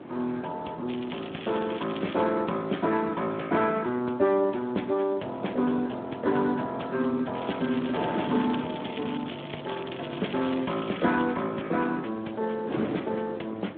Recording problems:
phone line; 190 Hz to 3.5 kHz, Speex
wind noise; below 630 Hz, SNR 11 dB
crackling; from 1 to 2 s and from 7.5 to 11 s; loose cable, SNR 13 dB

